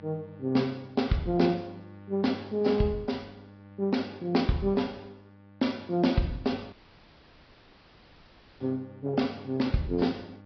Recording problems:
treble missing; nothing above 5.5 kHz
lossy compression; AAC, log-spectral distance 3 dB
hum; 50 Hz, harmonics up to 1.8 kHz, SNR 21 dB
dropout; at 6.5 s for 2 s

